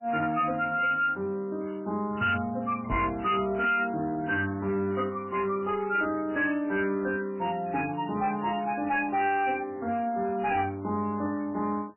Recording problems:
lossy codec; MP3, log-spectral distance 3 dB, nothing above 2.9 kHz
distorted audio; hard clipping, uneven, signal-to-distortion ratio 10 dB
microphone bump; at 3 s; peak -1 dB vs average level

